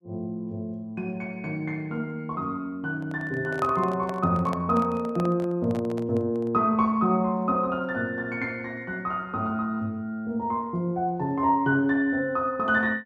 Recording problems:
handling noise; from 3 to 6.5 s; peak -5 dB vs average level

